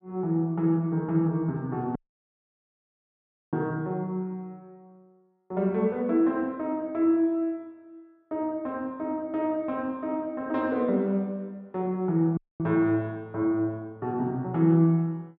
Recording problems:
audio cutting out; at 2 s for 1.5 s and at 12 s

